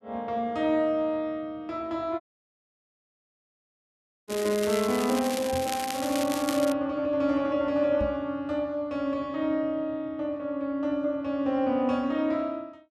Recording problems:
audio cutting out; at 2 s for 2 s
crackle; from 4.5 to 6.5 s; loose cable, SNR 8 dB
microphone bump; at 5.5 s and at 8 s; peak -3 dB vs average level

